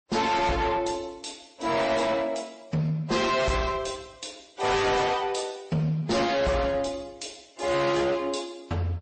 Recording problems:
codec artefacts; AAC, then MP3, log-spectral distance 5 dB, nothing above 8.2 kHz
distorted audio; soft clipping, signal-to-distortion ratio 8 dB

